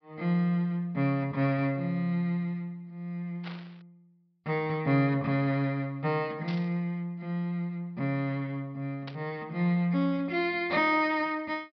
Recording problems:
low-pass filter; nothing above 5.5 kHz
static burst; at 3.5 s, at 6.5 s and at 9 s; peak -9 dB vs average level

